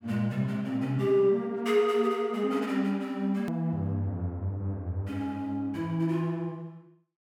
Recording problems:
hard cut with a click; at 3.5 s

